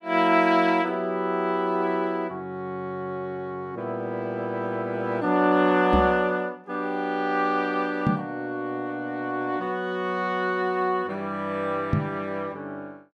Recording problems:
knock on the microphone; at 6 s, at 8 s and at 12 s; peak +6 dB vs average level

